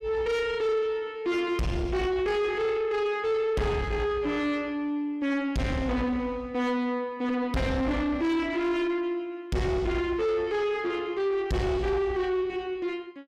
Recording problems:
distorted audio; soft clipping, signal-to-distortion ratio 6 dB

